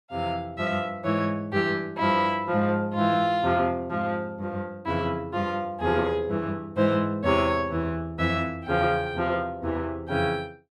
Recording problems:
none

